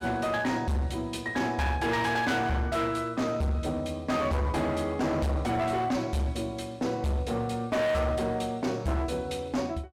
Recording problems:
distorted audio; hard clipping, signal-to-distortion ratio 7 dB

